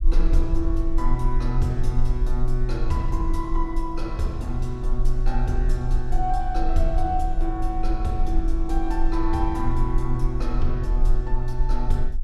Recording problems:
low-frequency rumble; below 36 Hz, strongest tone 18 Hz, SNR 0 dB

